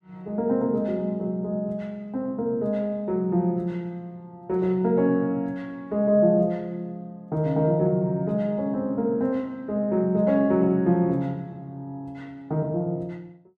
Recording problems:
none

